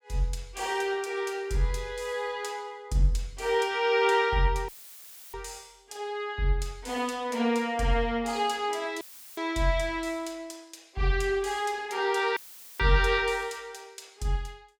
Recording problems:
dropout; at 4.5 s for 0.5 s, at 9 s and at 12 s; filled with static

